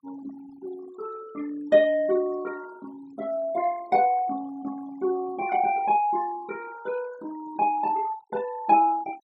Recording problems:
denoising artefacts; signal-to-artefact ratio 22 dB

